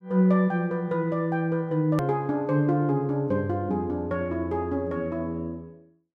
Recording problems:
hard cut with a click; at 2 s

